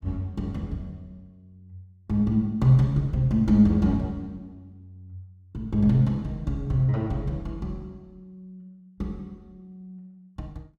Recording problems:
none

